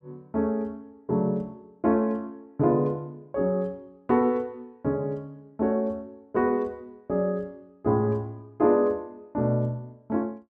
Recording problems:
none

